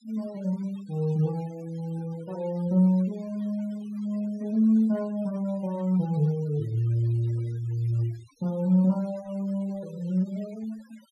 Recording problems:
noise reduction artefacts; signal-to-artefact ratio 26 dB

